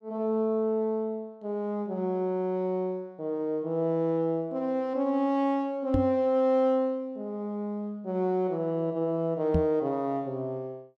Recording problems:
knock on the microphone; at 6 s and at 9.5 s; peak +5 dB vs average level

